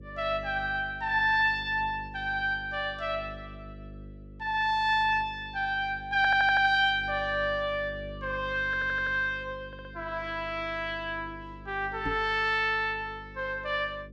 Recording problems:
hum; 50 Hz, harmonics up to 550 Hz, SNR 18 dB
stutter; at 6 s, at 8.5 s and at 9.5 s
knock on the microphone; at 12 s; peak -4 dB vs average level

